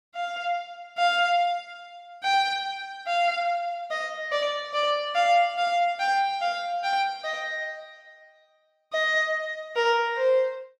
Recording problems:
none

